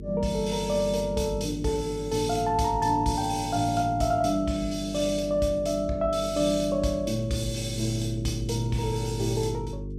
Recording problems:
hum; 50 Hz, harmonics up to 450 Hz, SNR 11 dB

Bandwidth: 14.5 kHz